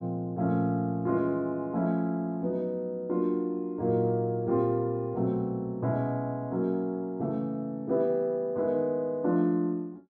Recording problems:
none

